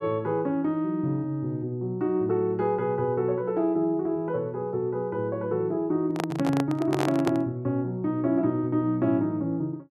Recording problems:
microphone handling noise; from 6 to 7.5 s; peak +1 dB vs average level

